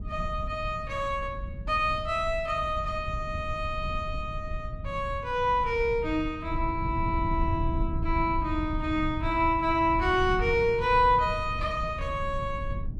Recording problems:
low-frequency rumble; below 100 Hz, SNR 8 dB

